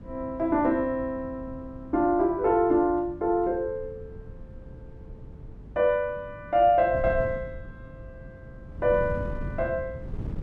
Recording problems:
wind on the microphone; below 180 Hz, SNR 15 dB

